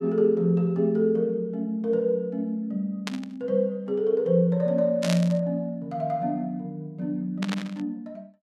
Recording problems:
static burst; at 3 s, at 5 s and at 7.5 s; peak -1 dB vs average level

